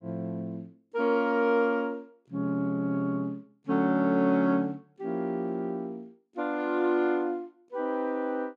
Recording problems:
none

